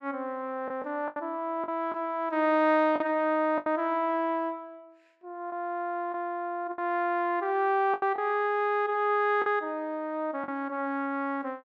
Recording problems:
lost packets; 5% of the sound replaced, filled with the last packet

